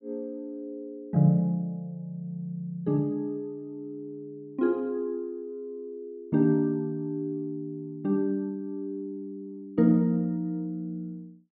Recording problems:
none

